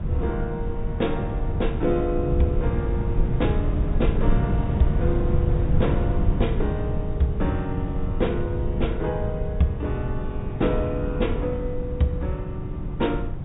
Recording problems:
low-pass filter; nothing above 4 kHz
rumble; below 140 Hz, SNR 0 dB
wind on the microphone; below 120 Hz, SNR 7 dB

